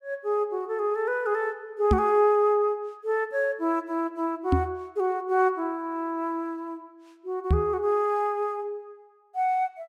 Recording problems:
knock on the microphone; at 2 s, at 4.5 s and at 7.5 s; peak +7 dB vs average level

